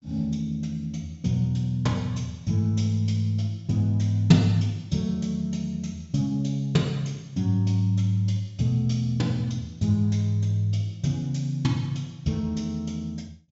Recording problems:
low-pass filter; nothing above 8 kHz

